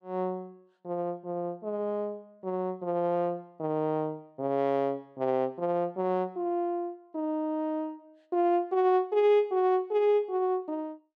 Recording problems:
none

